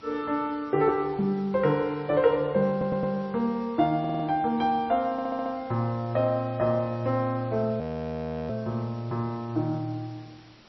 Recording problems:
codec artefacts; MP3, log-spectral distance 4 dB, nothing above 5.7 kHz
background hiss; slope -3 dB per octave, SNR 26 dB
stutter; at 2.5 s, at 4 s and at 5 s
audio freezing; at 8 s for 0.5 s

